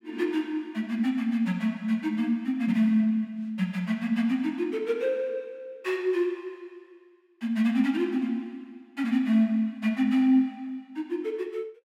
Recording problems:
none

